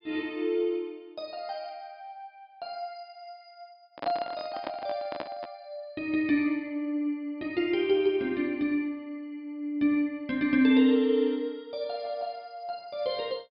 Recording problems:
treble missing; nothing above 5.5 kHz
microphone handling noise; from 4 to 5.5 s; peak -2 dB vs average level

